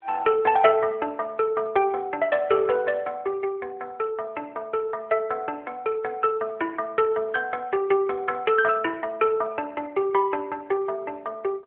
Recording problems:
phone line; 340 Hz to 3.4 kHz, AMR-NB

